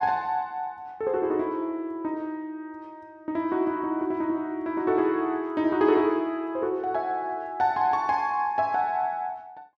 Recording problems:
none

